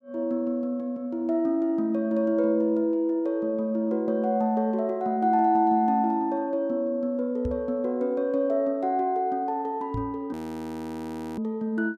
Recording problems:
microphone bump; at 7.5 s and at 10 s; peak -3 dB vs average level
audio freezing; at 10 s for 1 s

